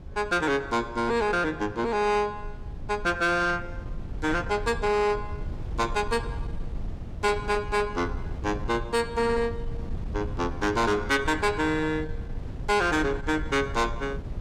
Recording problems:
distortion; soft clipping, signal-to-distortion ratio 11 dB
wind noise; below 130 Hz, SNR 11 dB

